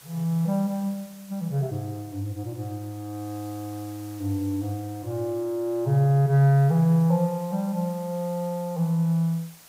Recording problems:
hiss; slope 0 dB per octave, SNR 23 dB

